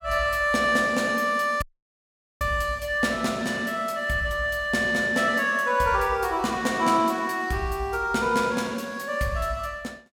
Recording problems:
dropout; at 1.5 s for 1 s

